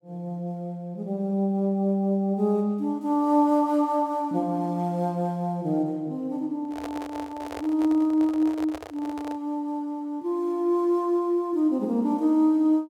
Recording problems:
handling noise; from 6.5 to 9.5 s; peak -7 dB vs average level

